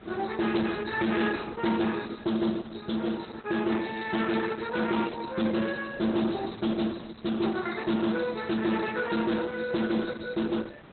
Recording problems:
codec artefacts; Opus, log-spectral distance 9 dB, nothing above 4.1 kHz
distortion; soft clipping, signal-to-distortion ratio 11 dB
wind noise; below 1.3 kHz, SNR 21 dB

